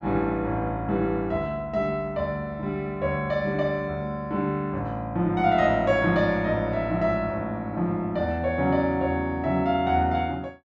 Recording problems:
none

